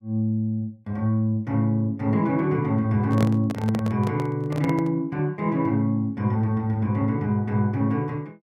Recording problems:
microphone handling noise; from 3 to 5 s; peak 0 dB vs average level

